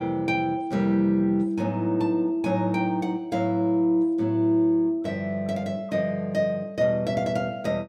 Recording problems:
none

